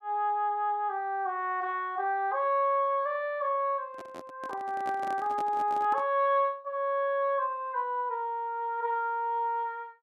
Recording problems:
handling noise; from 4 to 6 s; peak -8 dB vs average level

